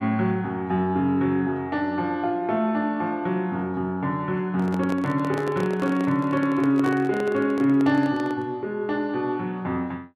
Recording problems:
microphone handling noise; from 4.5 to 8.5 s; peak -2 dB vs average level

